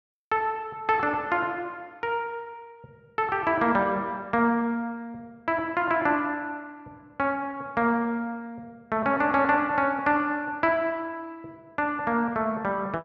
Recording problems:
none

